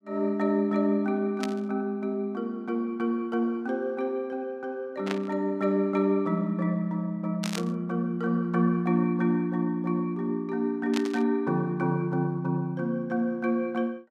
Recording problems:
burst of static; 4 times, first at 1.5 s; peak -1 dB vs average level

